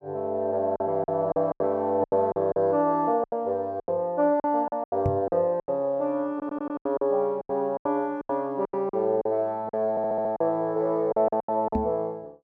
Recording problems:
lost packets; 14% of the sound replaced, filled with silence
microphone bump; at 5 s and at 12 s; peak +2 dB vs average level
stutter; at 6.5 s and at 10 s

